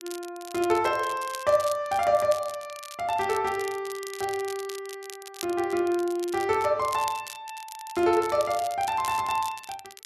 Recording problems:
crackling; vinyl, SNR 15 dB

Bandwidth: 12.5 kHz